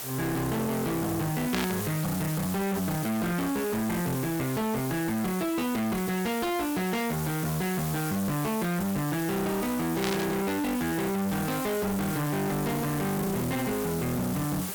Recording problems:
distortion; hard clipping, signal-to-distortion ratio 6 dB
hiss; slope -2 dB per octave, SNR 7 dB
static burst; at 1.5 s and at 10 s; peak +1 dB vs average level

